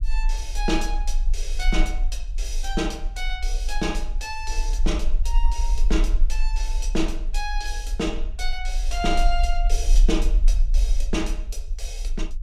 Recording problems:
rumble; below 38 Hz, strongest tone 26 Hz, SNR -3 dB

